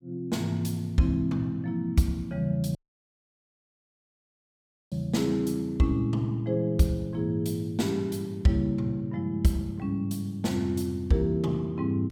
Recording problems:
dropout; at 3 s for 2 s

